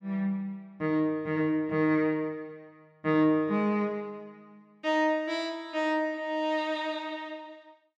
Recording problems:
none

